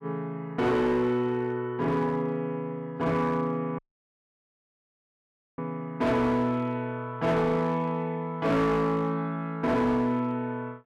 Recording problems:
distortion; hard clipping, signal-to-distortion ratio 10 dB
audio cutting out; at 4 s for 2 s

